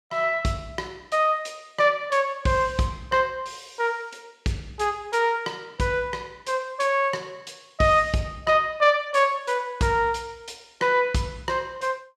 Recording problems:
none

